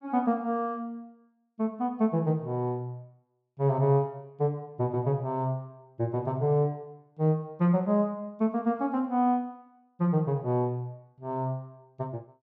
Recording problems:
none

